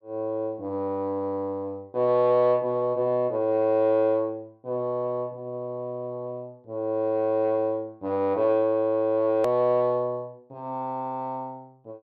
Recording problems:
edit click; at 9.5 s

